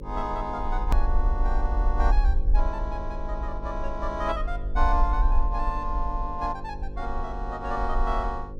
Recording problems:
electrical hum; 50 Hz, harmonics up to 550 Hz, SNR 9 dB
low-frequency rumble; below 48 Hz, SNR -1 dB
edit click; at 1 s

